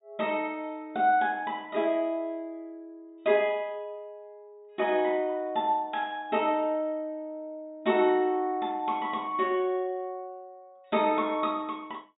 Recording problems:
treble missing; nothing above 4 kHz

